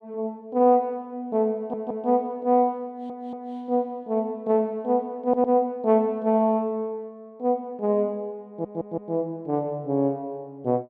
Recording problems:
stutter; 4 times, first at 1.5 s

